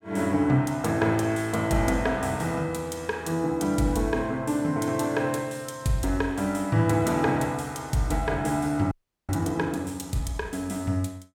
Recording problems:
audio freezing; at 9 s

